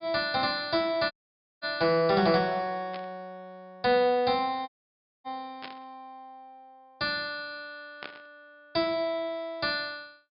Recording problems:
treble missing; nothing above 5.5 kHz
audio cutting out; at 1 s for 0.5 s and at 4.5 s for 0.5 s
static burst; at 3 s, at 5.5 s and at 8 s; peak -8 dB vs average level

